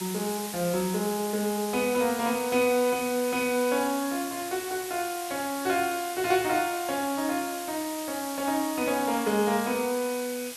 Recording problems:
hiss; slope +2 dB per octave, SNR 9 dB

